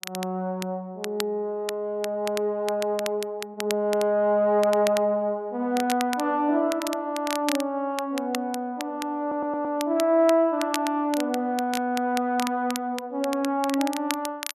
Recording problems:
crackle; vinyl, SNR 11 dB
audio stuttering; at 9 s

